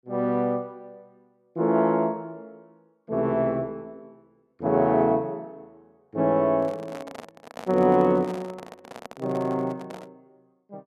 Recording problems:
microphone handling noise; from 6.5 to 10 s; peak -9 dB vs average level

